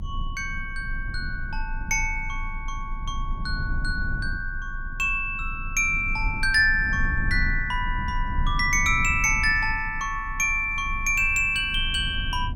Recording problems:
low-frequency rumble; below 68 Hz, strongest tone 26 Hz, SNR 9 dB

